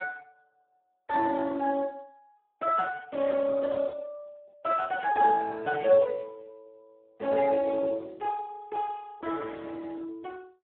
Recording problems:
telephone audio; 340 Hz to 2.9 kHz, Speex

